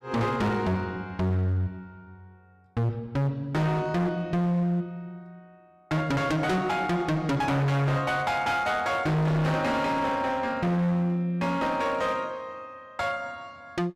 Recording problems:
distortion; hard clipping, signal-to-distortion ratio 7 dB

